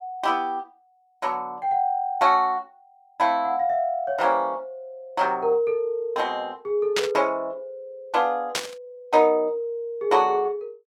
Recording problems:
static burst; at 7 s and at 8.5 s; peak +3 dB vs average level

